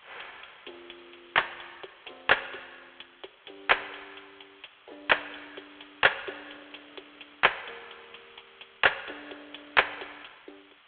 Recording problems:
telephone audio; 340 Hz to 3.5 kHz, G.726
hiss; SNR 27 dB

